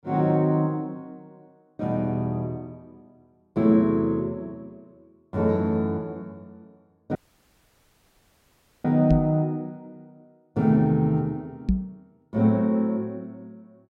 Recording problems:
audio cutting out; at 7 s for 1.5 s
microphone bump; at 9 s and at 12 s; peak +5 dB vs average level

